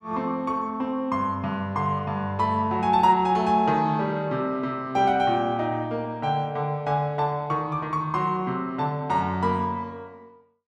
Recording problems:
none

